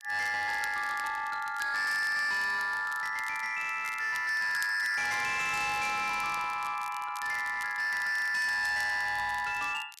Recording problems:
distortion; hard clipping, signal-to-distortion ratio 10 dB
crackle; vinyl, SNR 20 dB

